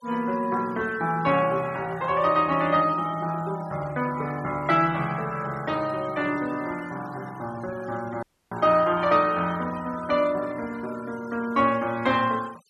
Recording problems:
denoising artefacts; signal-to-artefact ratio 21 dB
dropout; at 8 s

